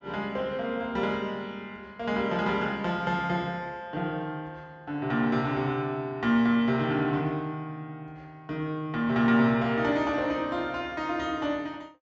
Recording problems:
low-pass filter; nothing above 7.8 kHz

